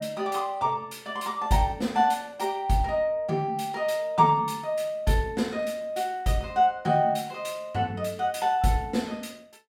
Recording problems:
none

